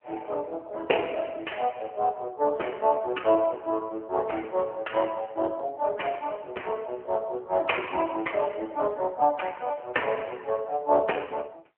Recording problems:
phone line; 300 Hz to 3.1 kHz, AMR-NB

